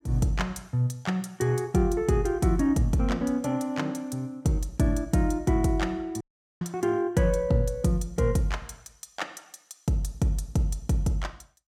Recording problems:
dropout; at 6 s

